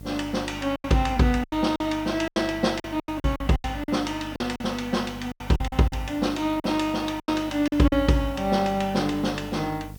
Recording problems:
electrical hum; 50 Hz, harmonics up to 700 Hz, SNR 17 dB
background hiss; slope +7 dB per octave, SNR 26 dB
lost packets; 11% of the sound replaced, filled with silence

